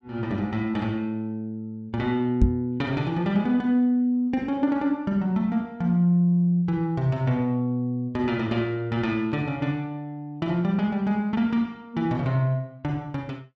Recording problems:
knock on the microphone; at 2.5 s; peak +8 dB vs average level

